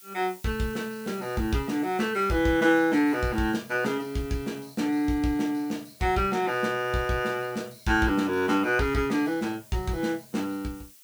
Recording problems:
hiss; slope +3 dB per octave, SNR 23 dB

